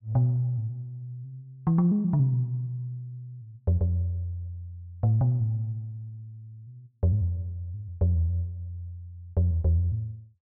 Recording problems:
none

